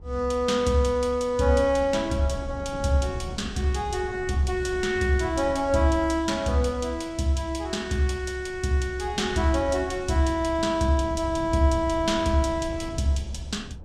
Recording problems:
wind noise; below 170 Hz, SNR 16 dB

